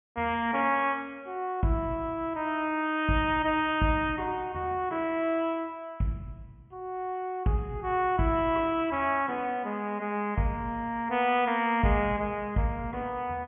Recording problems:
low-pass filter; nothing above 3.3 kHz

